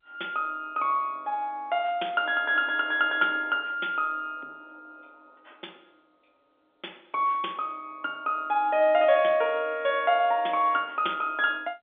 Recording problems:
telephone audio; 240 Hz to 3.6 kHz, G.711

